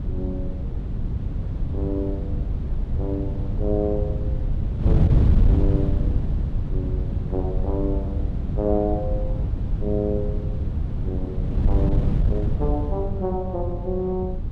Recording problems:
wind noise; below 120 Hz, SNR -4 dB

